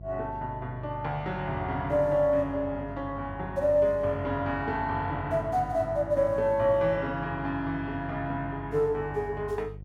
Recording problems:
electrical hum; 50 Hz, harmonics up to 500 Hz, SNR 15 dB

